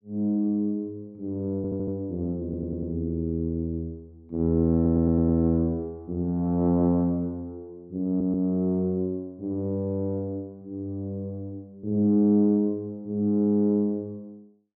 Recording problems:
audio stuttering; 4 times, first at 1.5 s

